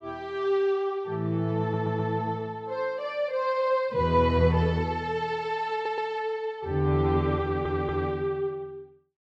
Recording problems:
stutter; at 1.5 s, at 5.5 s and at 7.5 s

